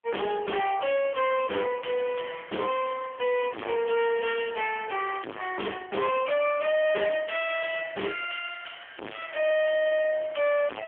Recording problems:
phone line; 340 Hz to 3.3 kHz, AMR-NB
distortion; hard clipping, signal-to-distortion ratio 0 dB

